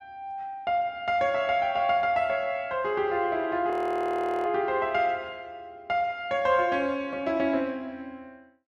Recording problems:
frozen audio; at 3.5 s for 1 s

